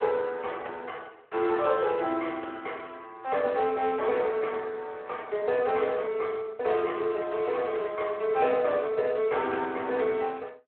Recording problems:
telephone audio; 340 Hz to 3.1 kHz, Speex

